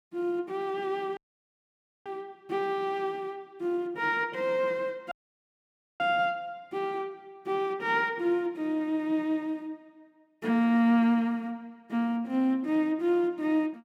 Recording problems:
audio cutting out; at 1 s for 1 s and at 5 s for 1 s

